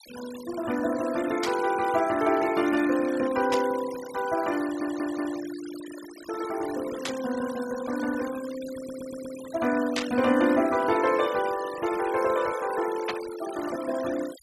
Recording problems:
noise reduction artefacts; signal-to-artefact ratio 14 dB
static burst; 5 times, first at 1.5 s; peak +1 dB vs average level
stutter; at 4.5 s and at 9 s

